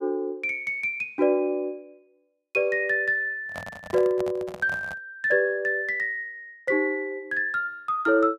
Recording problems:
microphone handling noise; from 3.5 to 5 s; peak -7 dB vs average level

